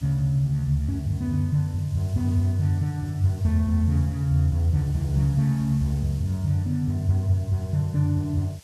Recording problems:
background hiss; slope +1 dB per octave, SNR 26 dB

